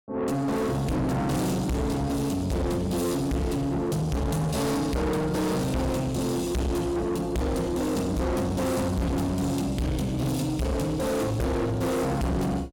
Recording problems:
distorted audio; soft clipping, signal-to-distortion ratio 6 dB

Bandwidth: 17.5 kHz